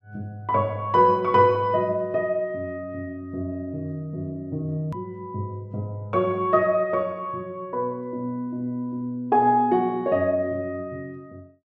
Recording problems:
hard cut with a click; at 5 s

